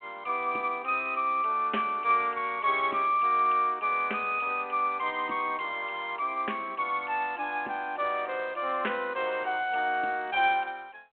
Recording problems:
phone line; 280 Hz to 3.3 kHz, G.726

